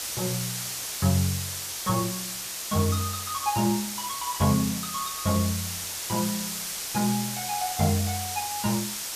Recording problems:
hiss; slope +2 dB per octave, SNR 2 dB

